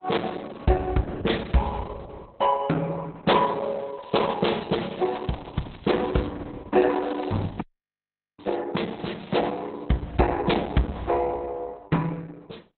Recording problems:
lossy compression; Opus, log-spectral distance 6 dB, nothing above 4 kHz
crackle; from 4 to 6.5 s, from 6.5 to 8.5 s and at 9 s; loose cable, SNR 23 dB
dropout; at 7.5 s for 1 s

